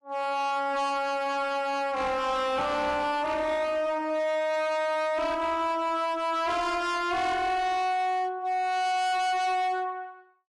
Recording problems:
lossy compression; AAC, log-spectral distance 2 dB, nothing above 11.3 kHz
distorted audio; hard clipping, signal-to-distortion ratio 6 dB

